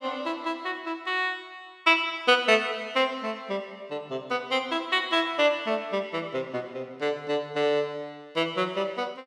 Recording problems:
none

